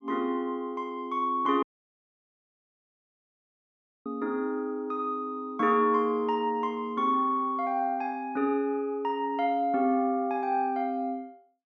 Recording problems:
audio cutting out; at 1.5 s for 2.5 s

